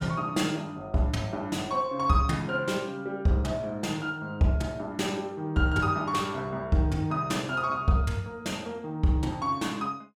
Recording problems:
none

